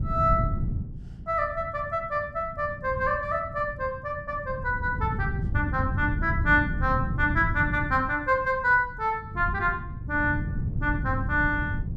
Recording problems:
wind noise; below 150 Hz, SNR 5 dB

